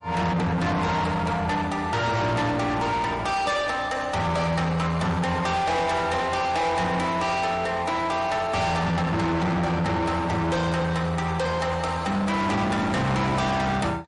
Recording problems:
lossy codec; MP3, log-spectral distance 2 dB, nothing above 10.4 kHz
distortion; soft clipping, signal-to-distortion ratio 7 dB

